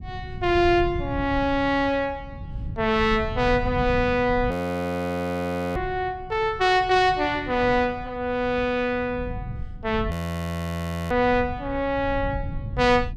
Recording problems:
low-frequency rumble; below 170 Hz, SNR 11 dB
frozen audio; at 4.5 s for 1.5 s and at 10 s for 1 s

